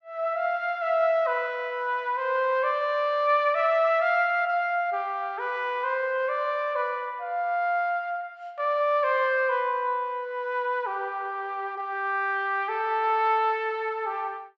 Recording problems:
none

